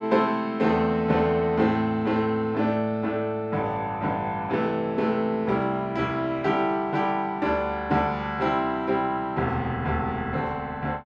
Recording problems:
none

